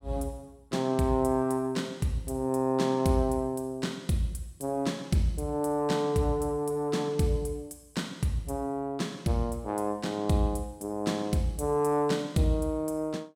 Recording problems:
none

